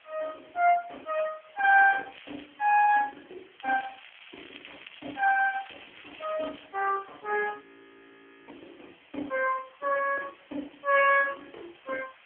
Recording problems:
phone line; 260 Hz to 3.1 kHz, AMR-NB
hiss; SNR 29 dB
crackle; at 2 s and from 3.5 to 6.5 s; loose cable, SNR 21 dB
frozen audio; at 7.5 s for 1 s

